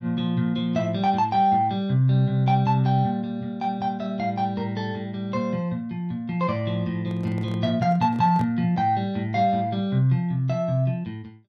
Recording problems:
microphone handling noise; from 7 to 8.5 s; peak -10 dB vs average level

